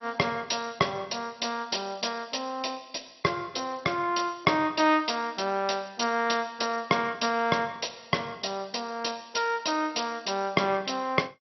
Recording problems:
codec artefacts; MP2, log-spectral distance 7 dB, nothing above 5.8 kHz

